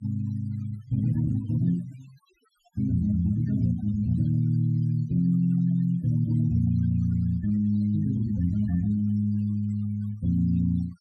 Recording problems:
denoising artefacts; signal-to-artefact ratio 24 dB

